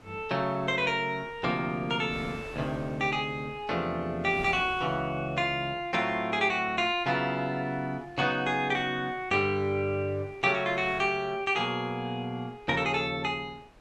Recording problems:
wind on the microphone; below 1.3 kHz, SNR 22 dB

